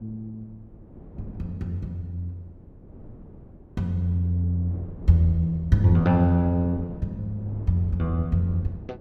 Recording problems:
wind on the microphone; below 270 Hz, SNR 18 dB

